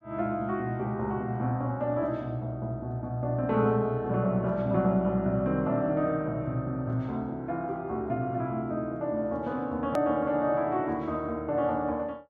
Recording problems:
edit click; at 10 s

